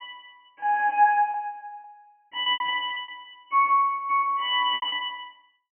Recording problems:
treble missing; nothing above 3.1 kHz
packet loss; 11% of the sound replaced, filled with repeated pitch periods

